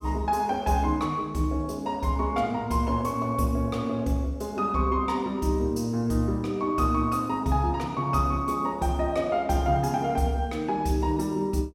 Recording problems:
none

